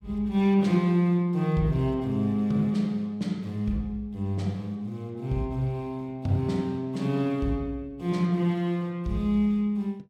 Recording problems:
none

